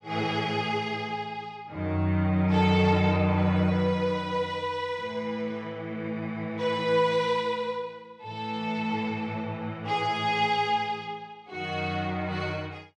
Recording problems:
none

